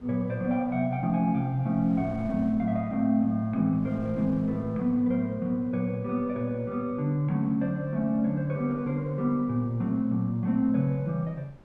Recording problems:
wind on the microphone; below 380 Hz, SNR 24 dB

